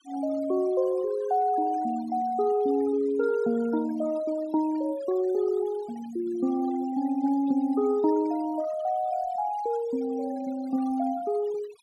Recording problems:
denoising artefacts; signal-to-artefact ratio 20 dB

